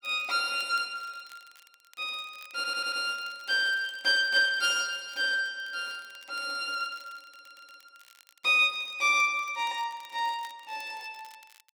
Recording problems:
crackle; vinyl, SNR 28 dB
audio stuttering; at 2.5 s and at 7 s

